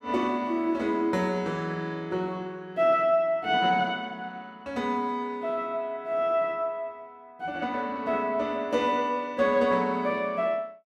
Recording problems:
none

